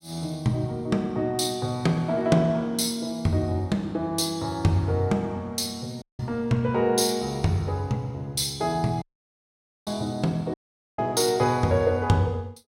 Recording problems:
audio cutting out; at 6 s, at 9 s for 1 s and at 11 s

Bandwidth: 16.5 kHz